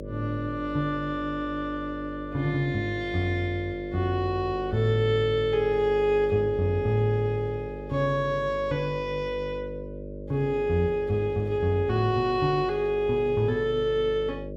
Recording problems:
hum; 50 Hz, harmonics up to 600 Hz, SNR 12 dB

